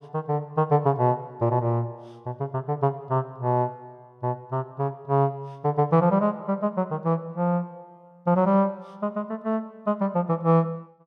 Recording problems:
none

